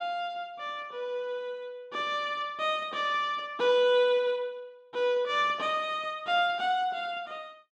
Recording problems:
none

